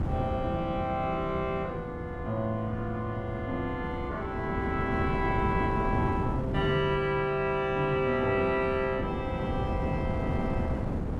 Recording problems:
wind on the microphone; below 290 Hz, SNR 4 dB

